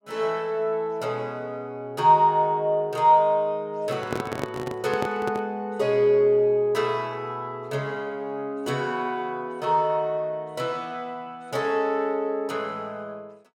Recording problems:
handling noise; from 4 to 5.5 s; peak 0 dB vs average level

